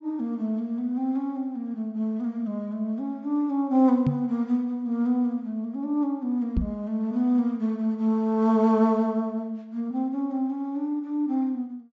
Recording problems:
treble missing; nothing above 7.5 kHz
knock on the microphone; at 4 s and at 6.5 s; peak +4 dB vs average level

